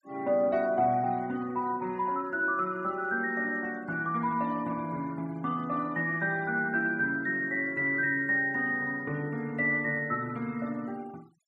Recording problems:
noise reduction artefacts; signal-to-artefact ratio 25 dB

